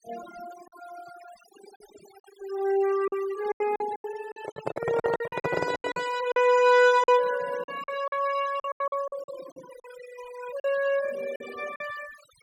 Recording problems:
noise reduction artefacts; signal-to-artefact ratio 15 dB
packet loss; 11% of the sound replaced, filled with silence
microphone handling noise; from 4.5 to 6 s; peak +1 dB vs average level

